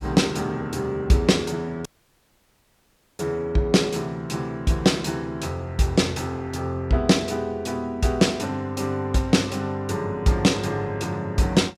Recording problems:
dropout; at 2 s for 1.5 s

